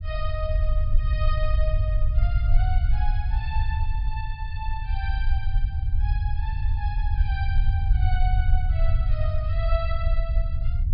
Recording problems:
treble missing; nothing above 5 kHz
rumble; below 72 Hz, SNR -10 dB

